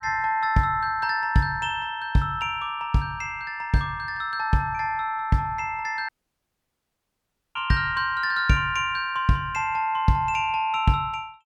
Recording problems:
dropout; at 6 s for 1.5 s

